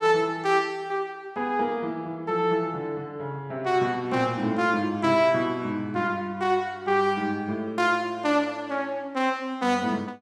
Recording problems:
none

